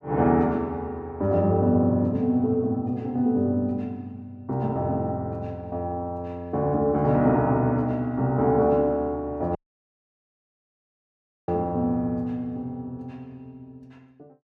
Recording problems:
dropout; at 9.5 s for 2 s

